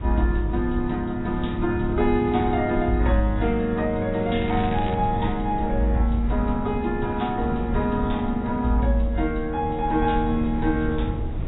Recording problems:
lossy compression; AAC, log-spectral distance 2 dB, nothing above 3.8 kHz
wind noise; below 130 Hz, SNR 8 dB
crackle; at 4.5 s; loose cable, SNR 17 dB

